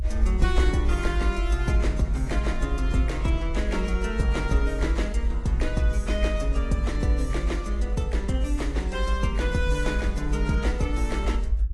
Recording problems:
lossy compression; AAC, log-spectral distance 2 dB, nothing above 11.3 kHz
rumble; below 56 Hz, SNR -1 dB

